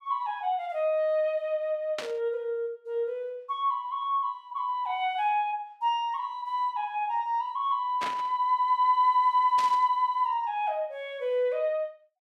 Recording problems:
burst of static; at 2 s, at 8 s and at 9.5 s; peak -3 dB vs average level

